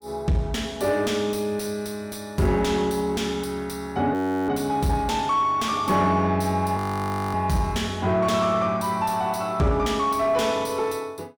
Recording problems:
distortion; soft clipping, signal-to-distortion ratio 11 dB
frozen audio; at 4 s and at 7 s for 0.5 s

